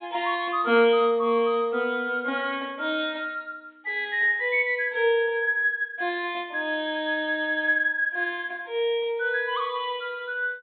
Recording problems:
treble cut off; nothing above 4 kHz

